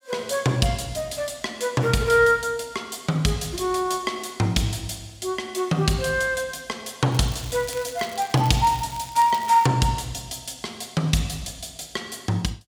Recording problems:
crackling; from 7 to 9.5 s; loose cable, SNR 18 dB

